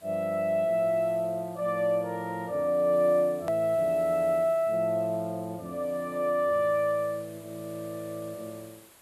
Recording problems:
background hiss; slope -2 dB per octave, SNR 25 dB
edit click; at 3.5 s

